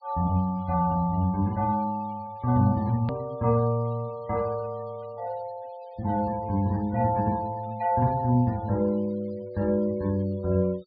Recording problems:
low-pass filter; nothing above 4.9 kHz
noise reduction artefacts; signal-to-artefact ratio 27 dB
click at an edit; at 3 s

